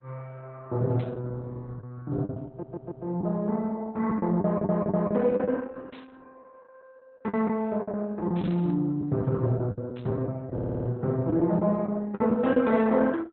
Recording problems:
codec artefacts; Opus, log-spectral distance 3 dB, nothing above 4 kHz
lost packets; 8% of the sound replaced, filled with the last packet
static burst; 4 times, first at 1 s; peak -14 dB vs average level
stutter; at 2.5 s, at 4.5 s and at 11 s

